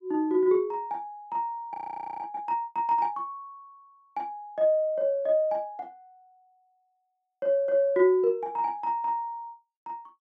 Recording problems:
frozen audio; at 1.5 s

